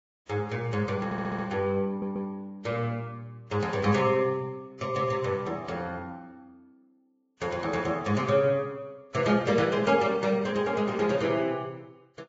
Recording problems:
lossy codec; Vorbis, log-spectral distance 2 dB, nothing above 7.3 kHz
stutter; at 1 s and at 2 s

